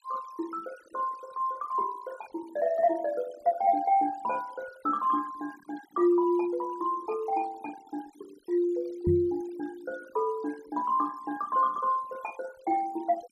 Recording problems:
denoising artefacts; signal-to-artefact ratio 20 dB
microphone bump; at 9 s; peak +3 dB vs average level

